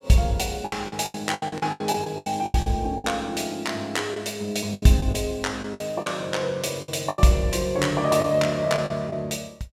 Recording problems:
lost packets; 13% of the sound replaced, filled with the last packet

